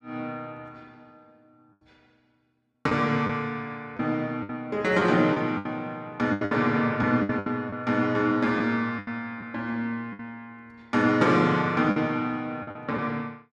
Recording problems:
packet loss; 7% of the sound replaced, filled with the last packet

